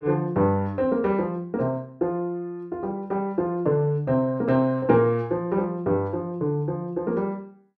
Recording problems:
none

